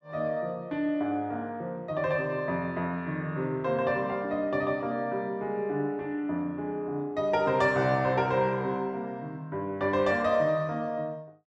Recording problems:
none

